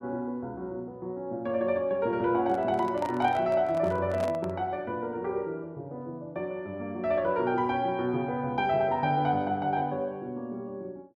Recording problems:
microphone handling noise; from 2.5 to 4.5 s; peak -4 dB vs average level

